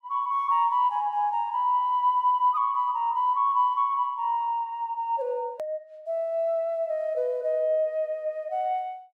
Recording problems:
click at an edit; at 5.5 s

